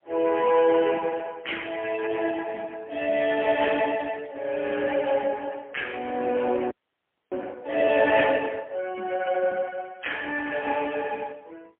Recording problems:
phone line; 220 Hz to 3.2 kHz, AMR-NB, then MP3
audio freezing; at 6.5 s for 0.5 s

